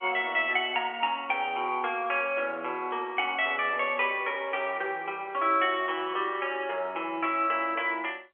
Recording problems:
telephone audio; 300 Hz to 3.4 kHz, G.711

